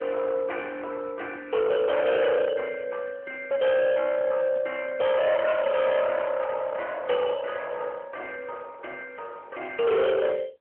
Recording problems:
telephone audio; 650 Hz to 2.8 kHz, AMR-NB
distortion; hard clipping, signal-to-distortion ratio 7 dB

